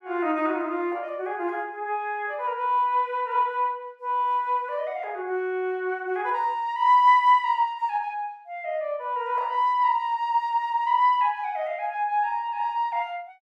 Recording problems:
none

